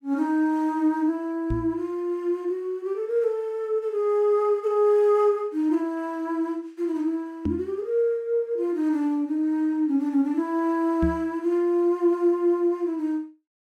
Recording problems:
microphone bump; at 1.5 s, at 7.5 s and at 11 s; peak +1 dB vs average level

